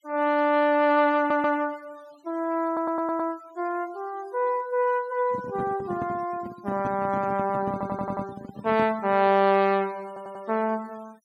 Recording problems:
denoising artefacts; signal-to-artefact ratio 25 dB
stutter; 4 times, first at 1 s
handling noise; from 5.5 to 9.5 s; peak -4 dB vs average level

